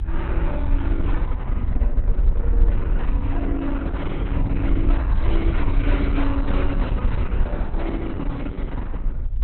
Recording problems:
lossy compression; Opus, log-spectral distance 2 dB, nothing above 4 kHz
rumble; below 56 Hz, SNR -4 dB

